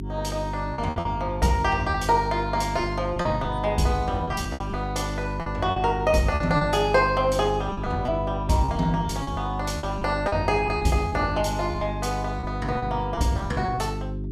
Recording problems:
hum; 50 Hz, harmonics up to 400 Hz, SNR 6 dB
packet loss; 9% of the sound replaced, filled with repeated pitch periods

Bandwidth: 15 kHz